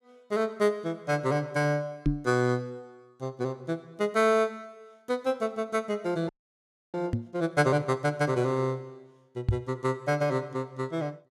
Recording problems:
microphone thump; at 2 s, at 7 s and at 9.5 s; peak +7 dB vs average level
frozen audio; at 6.5 s for 0.5 s

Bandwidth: 15 kHz